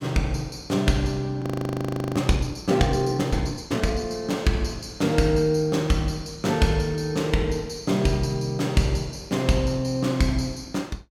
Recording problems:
audio freezing; at 1.5 s for 0.5 s

